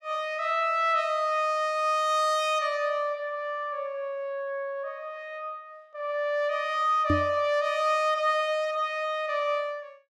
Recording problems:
microphone bump; at 7 s; peak +4 dB vs average level

